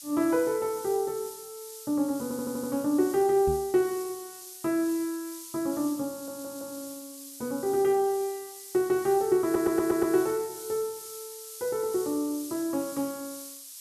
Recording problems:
background hiss; SNR 13 dB
audio stuttering; at 2 s, at 6 s and at 9.5 s
knock on the microphone; at 3.5 s; peak -3 dB vs average level

